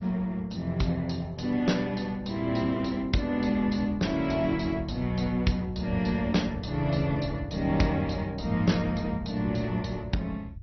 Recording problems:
lossy codec; Opus, then MP2, log-spectral distance 4 dB, nothing above 5.8 kHz
low-frequency rumble; below 120 Hz, SNR 12 dB

